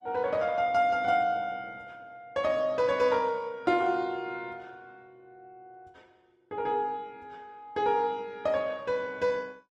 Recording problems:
lossy codec; Opus, log-spectral distance 2 dB, nothing above 11.6 kHz

